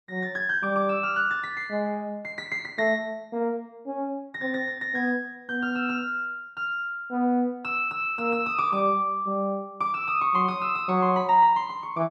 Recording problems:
none

